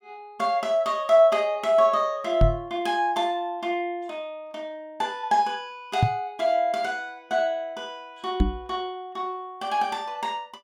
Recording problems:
knock on the microphone; at 2.5 s, at 6 s and at 8.5 s; peak +8 dB vs average level

